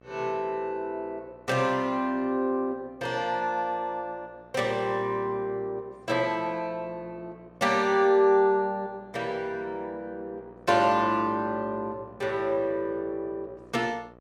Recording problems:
hum; 60 Hz, harmonics up to 1.9 kHz, SNR 25 dB

